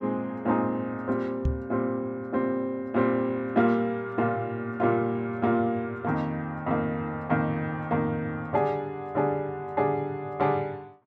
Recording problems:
knock on the microphone; at 1.5 s; peak +4 dB vs average level

